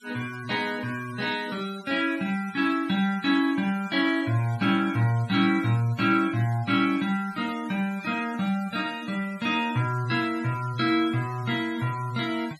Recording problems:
denoising artefacts; signal-to-artefact ratio 21 dB

